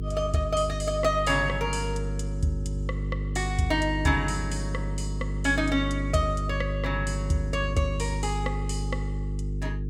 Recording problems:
hum; 50 Hz, harmonics up to 450 Hz, SNR 3 dB

